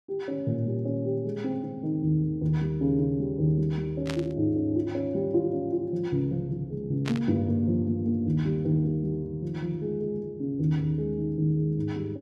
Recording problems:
static burst; at 4 s and at 7 s; peak -4 dB vs average level

